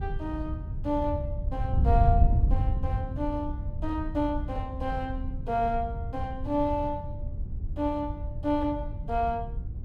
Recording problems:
wind noise; below 94 Hz, SNR 1 dB

